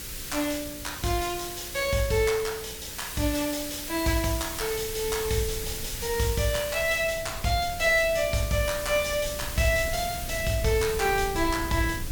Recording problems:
mains hum; 60 Hz, harmonics up to 540 Hz, SNR 22 dB
background hiss; slope +3 dB per octave, SNR 8 dB
rumble; below 110 Hz, SNR 15 dB

